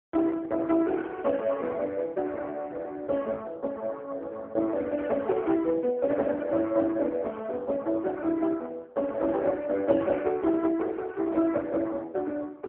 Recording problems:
telephone audio; 240 Hz to 3.4 kHz, AMR-NB

